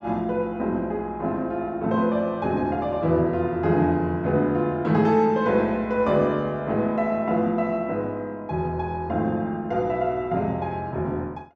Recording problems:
none

